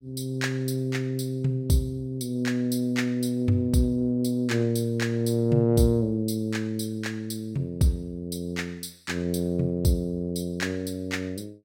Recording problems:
none

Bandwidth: 16 kHz